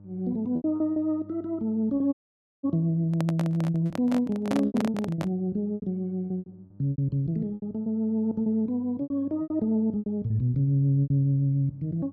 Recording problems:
hum; 50 Hz, harmonics up to 600 Hz, SNR 24 dB
lost packets; 12% of the sound replaced, filled with repeated pitch periods
audio cutting out; at 2 s for 0.5 s
handling noise; from 3 to 5.5 s; peak 0 dB vs average level

